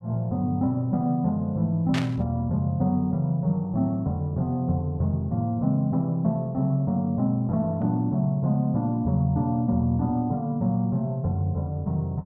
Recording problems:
burst of static; at 2 s; peak -2 dB vs average level

